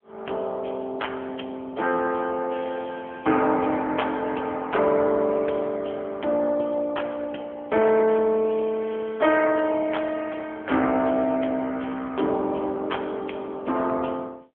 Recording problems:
phone line; 220 Hz to 3.3 kHz, AMR-NB

